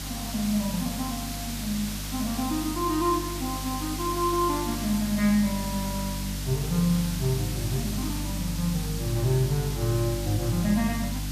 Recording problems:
hum; 50 Hz, harmonics up to 300 Hz, SNR 6 dB
background hiss; slope 0 dB per octave, SNR 7 dB

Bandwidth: 14.5 kHz